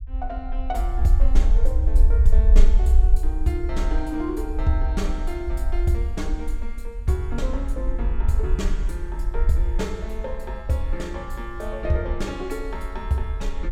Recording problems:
rumble; below 52 Hz, SNR -4 dB

